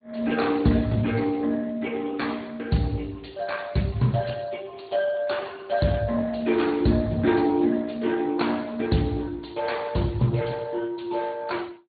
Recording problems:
treble cut off; nothing above 4.5 kHz
codec artefacts; Speex, log-spectral distance 5 dB

